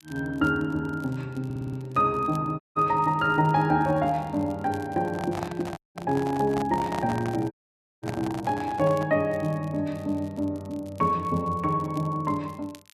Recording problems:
crackling; vinyl, SNR 28 dB
audio stuttering; at 1.5 s
audio cutting out; at 2.5 s, at 6 s and at 7.5 s for 0.5 s
handling noise; from 5 to 9 s; peak -3 dB vs average level

